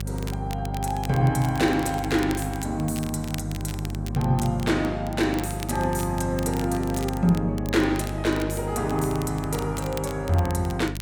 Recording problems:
hum; 50 Hz, harmonics up to 600 Hz, SNR 7 dB
crackle; vinyl, SNR 16 dB

